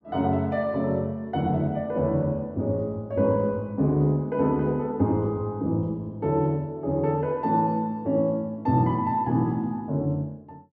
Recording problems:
none

